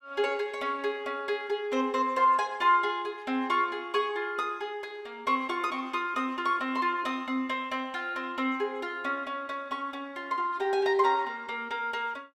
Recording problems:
none

